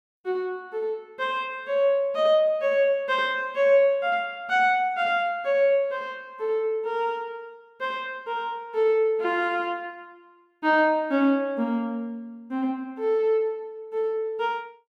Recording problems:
none

